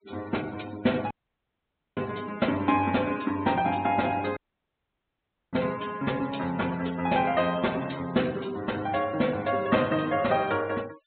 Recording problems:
low-pass filter; nothing above 4 kHz
denoising artefacts; signal-to-artefact ratio 20 dB
dropout; at 1 s for 1 s and at 4.5 s for 1 s

